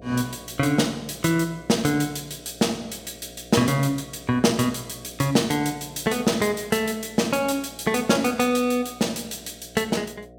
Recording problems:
hum; 60 Hz, harmonics up to 720 Hz, SNR 22 dB

